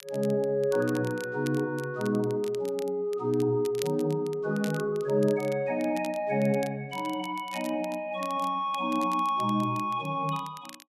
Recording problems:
crackling; vinyl, SNR 19 dB

